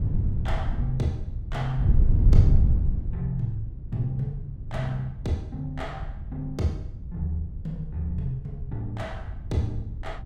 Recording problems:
wind noise; below 92 Hz, SNR -2 dB

